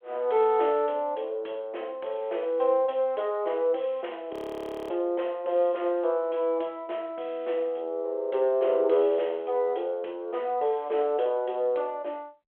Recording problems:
phone line; 300 Hz to 3.3 kHz, G.726
audio freezing; at 4.5 s for 0.5 s

